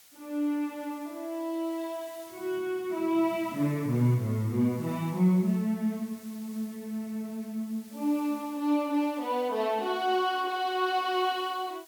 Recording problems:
hiss; slope +1 dB per octave, SNR 22 dB

